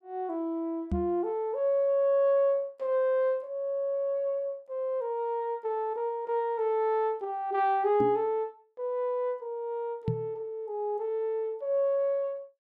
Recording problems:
knock on the microphone; at 1 s, at 8 s and at 10 s; peak +2 dB vs average level

